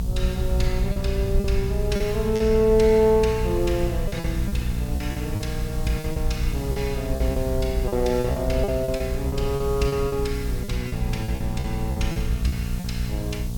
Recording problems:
mains hum; 60 Hz, harmonics up to 720 Hz, SNR 5 dB
hiss; SNR 17 dB
low-frequency rumble; below 66 Hz, SNR 5 dB
packet loss; 10% of the sound replaced, filled with repeated pitch periods

